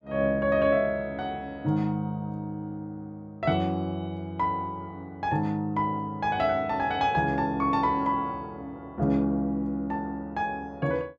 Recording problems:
none

